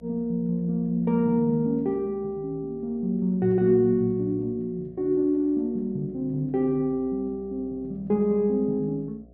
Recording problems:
hum; 60 Hz, harmonics up to 720 Hz, SNR 27 dB

